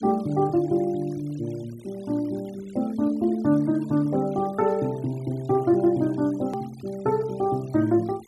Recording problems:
noise reduction artefacts; signal-to-artefact ratio 26 dB
hard cut with a click; at 6.5 s

